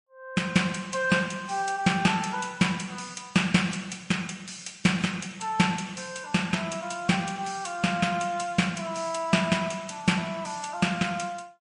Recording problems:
lossy compression; MP3, log-spectral distance 3 dB, nothing above 10.1 kHz

